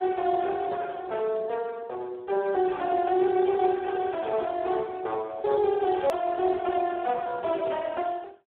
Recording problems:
telephone audio; 320 Hz to 3.8 kHz, Speex
hard cut with a click; at 6 s

